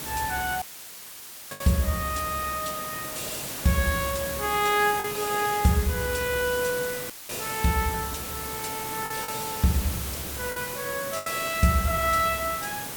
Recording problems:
hiss; slope -3 dB per octave, SNR 6 dB
lost packets; 3% of the sound replaced, filled with the last packet
dropout; at 0.5 s for 1 s and at 7 s; filled with static

